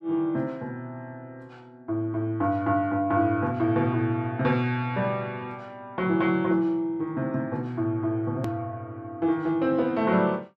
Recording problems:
click at an edit; at 8.5 s

